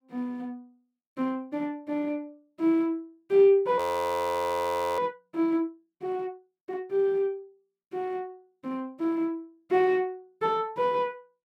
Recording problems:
frozen audio; at 4 s for 1 s

